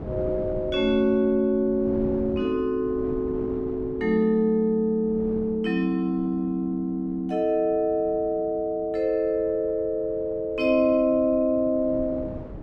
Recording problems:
wind noise; below 390 Hz, SNR 17 dB

